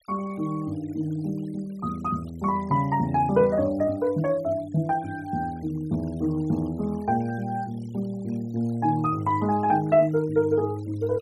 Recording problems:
noise reduction artefacts; signal-to-artefact ratio 26 dB

